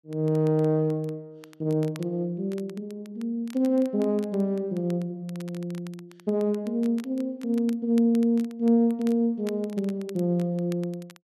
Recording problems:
crackle; vinyl, SNR 25 dB

